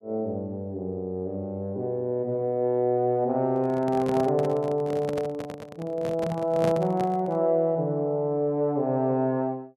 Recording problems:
handling noise; from 3.5 to 7.5 s; peak 0 dB vs average level

